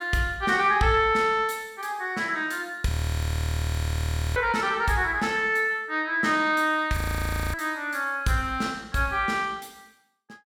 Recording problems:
audio freezing; at 3 s for 1.5 s and at 7 s for 0.5 s

